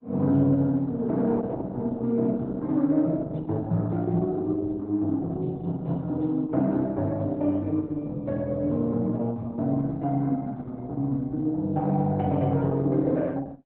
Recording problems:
lossy codec; Opus, log-spectral distance 2 dB, nothing above 3.9 kHz

